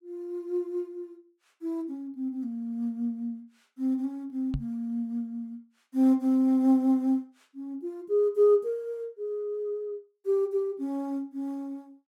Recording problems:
microphone bump; at 4.5 s; peak 0 dB vs average level

